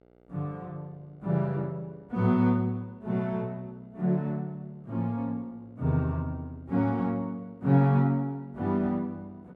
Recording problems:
hum; 60 Hz, harmonics up to 2.2 kHz, SNR 31 dB

